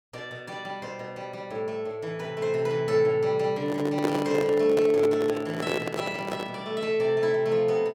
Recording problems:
microphone handling noise; from 3.5 to 6.5 s; peak +3 dB vs average level

